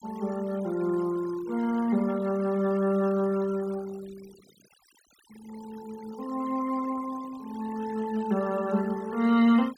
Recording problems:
noise reduction artefacts; signal-to-artefact ratio 21 dB

